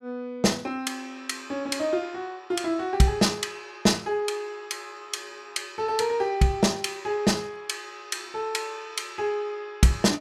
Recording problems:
none

